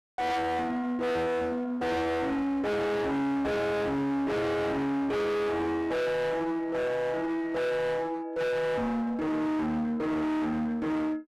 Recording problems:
distortion; hard clipping, uneven, signal-to-distortion ratio 5 dB

